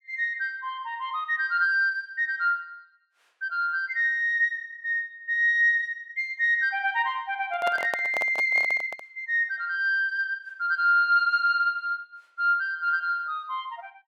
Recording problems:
handling noise; from 7.5 to 9 s; peak -3 dB vs average level

